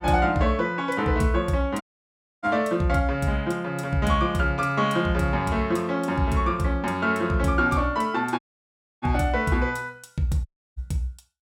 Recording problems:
dropout; at 2 s for 0.5 s, at 8.5 s for 0.5 s and at 10 s

